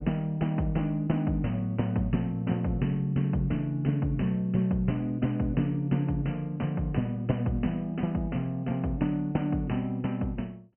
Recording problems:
treble cut off; nothing above 3.1 kHz

